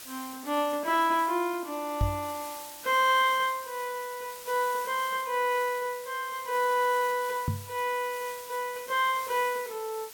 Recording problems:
background hiss; slope +1 dB per octave, SNR 14 dB
microphone bump; at 2 s and at 7.5 s; peak +4 dB vs average level

